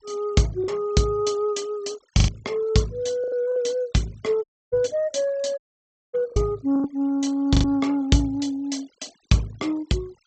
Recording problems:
treble missing; nothing above 8 kHz
denoising artefacts; signal-to-artefact ratio 26 dB
lost packets; 5% of the sound replaced, filled with the last packet
audio cutting out; at 4.5 s and at 5.5 s for 0.5 s

